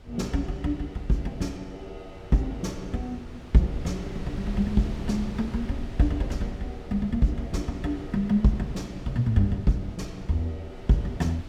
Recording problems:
wind on the microphone; below 160 Hz, SNR 14 dB

